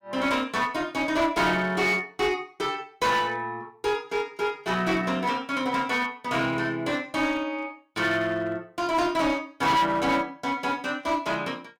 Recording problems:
distortion; hard clipping, uneven, signal-to-distortion ratio 9 dB

